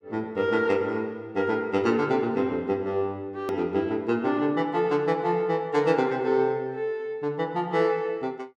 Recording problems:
hard cut with a click; at 3.5 s

